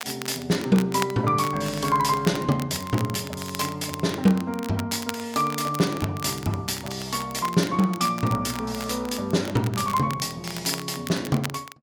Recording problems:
crackling; vinyl, SNR 13 dB

